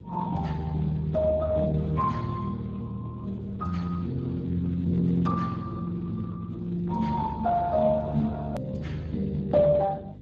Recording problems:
lossy codec; Speex, log-spectral distance 2 dB, nothing above 13.1 kHz
hum; 50 Hz, harmonics up to 500 Hz, SNR 17 dB
hard cut with a click; at 8.5 s

